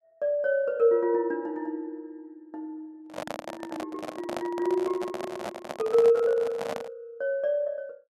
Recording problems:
handling noise; from 3 to 7 s; peak -3 dB vs average level

